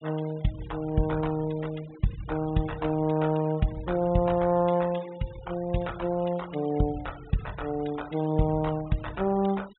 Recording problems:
treble cut off; nothing above 3.8 kHz
denoising artefacts; signal-to-artefact ratio 21 dB

